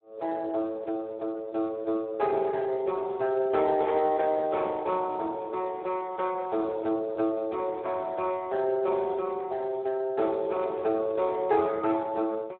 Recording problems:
phone line; 240 Hz to 2 kHz, Speex

